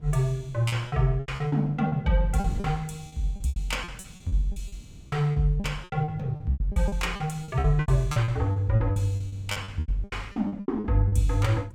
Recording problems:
wind on the microphone; below 170 Hz, SNR 18 dB
lost packets; 19% of the sound replaced, filled with repeated pitch periods

